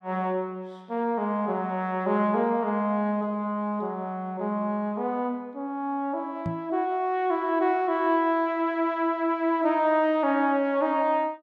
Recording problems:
knock on the microphone; at 6.5 s; peak -1 dB vs average level

